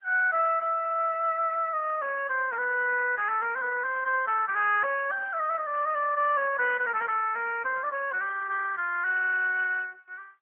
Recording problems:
phone line; 390 Hz to 3.1 kHz, AMR-NB

